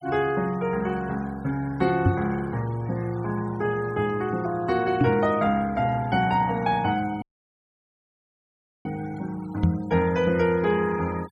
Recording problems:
denoising artefacts; signal-to-artefact ratio 22 dB
microphone thump; at 2 s, at 5 s and at 9.5 s; peak +8 dB vs average level
audio cutting out; at 7 s for 1.5 s

